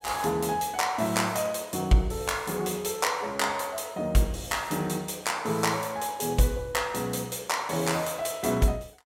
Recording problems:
none

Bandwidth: 16 kHz